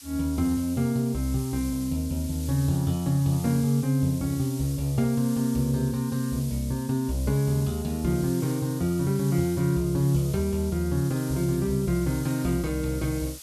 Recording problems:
background hiss; slope +3 dB per octave, SNR 15 dB

